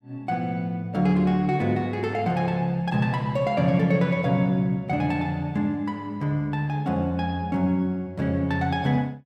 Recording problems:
none

